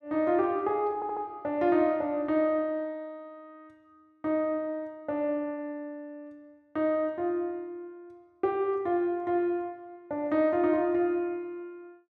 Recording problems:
stutter; at 1 s

